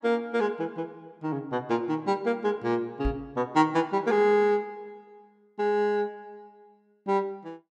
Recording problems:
microphone thump; at 3 s; peak 0 dB vs average level

